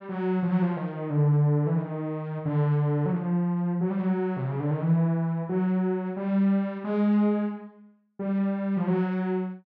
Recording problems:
none

